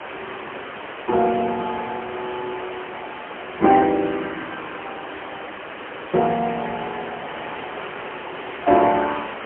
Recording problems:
phone line; 190 Hz to 3.2 kHz, AMR-NB, then MP3
background hiss; SNR 11 dB

